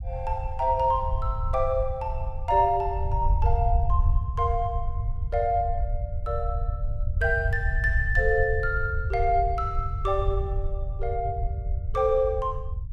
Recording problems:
rumble; below 80 Hz, SNR 3 dB

